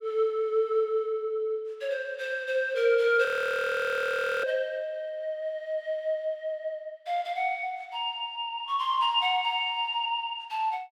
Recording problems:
frozen audio; at 3.5 s for 1 s

